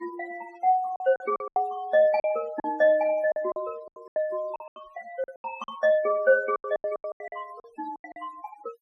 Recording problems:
noise reduction artefacts; signal-to-artefact ratio 22 dB
lost packets; 15% of the sound replaced, filled with silence

